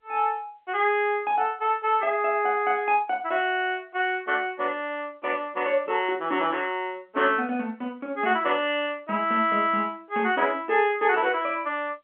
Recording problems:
phone line; 240 Hz to 3.2 kHz, G.711

